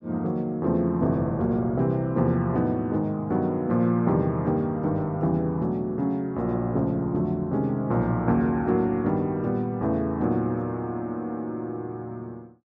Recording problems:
none

